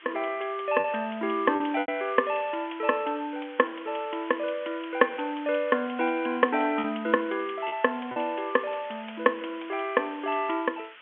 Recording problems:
phone line; 170 Hz to 3.3 kHz, G.711
background hiss; SNR 18 dB
packet loss; 3% of the sound replaced, filled with repeated pitch periods

